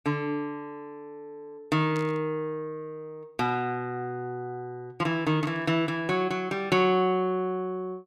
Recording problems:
burst of static; at 2 s and at 5.5 s; peak -11 dB vs average level

